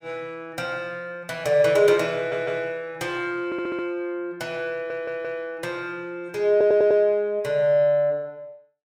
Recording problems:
audio stuttering; 4 times, first at 2 s

